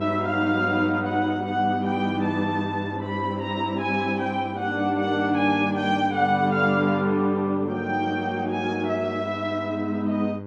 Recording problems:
hum; 50 Hz, harmonics up to 1.5 kHz, SNR 11 dB

